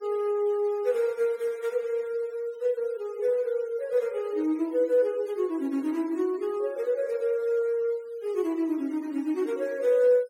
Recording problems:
noise reduction artefacts; signal-to-artefact ratio 24 dB

